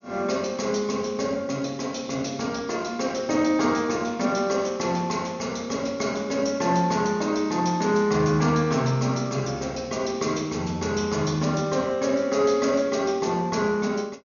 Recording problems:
low-pass filter; nothing above 6.8 kHz

